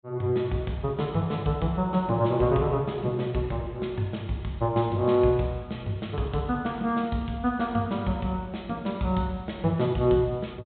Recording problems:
treble cut off; nothing above 4 kHz

